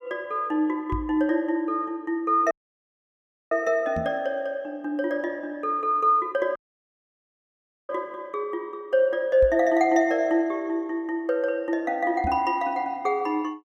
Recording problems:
knock on the microphone; 4 times, first at 1 s; peak -3 dB vs average level
audio cutting out; at 2.5 s for 1 s and at 6.5 s for 1.5 s

